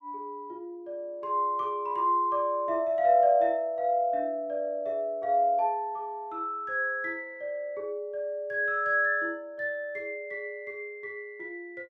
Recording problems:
none

